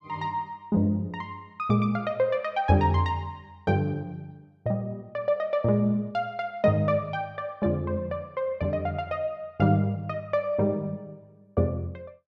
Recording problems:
none

